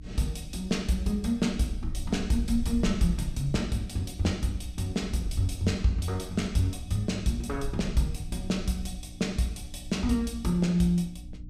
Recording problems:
hum; 60 Hz, harmonics up to 300 Hz, SNR 19 dB
wind on the microphone; below 70 Hz, SNR 12 dB

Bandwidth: 15.5 kHz